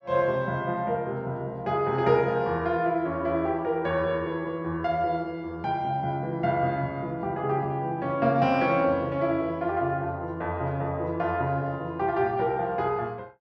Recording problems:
none

